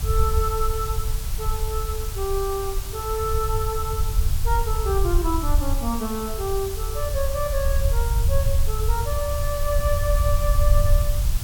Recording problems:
background hiss; slope -1 dB per octave, SNR 7 dB
low-frequency rumble; below 74 Hz, SNR -2 dB

